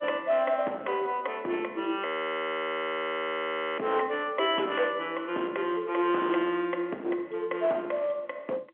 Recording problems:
telephone audio; 240 Hz to 3.3 kHz, G.711
distortion; hard clipping, uneven, signal-to-distortion ratio 12 dB
frozen audio; at 2 s for 1.5 s

